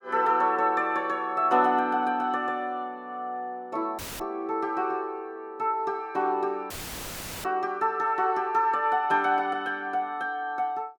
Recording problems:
audio cutting out; at 4 s and at 6.5 s for 0.5 s; filled with static

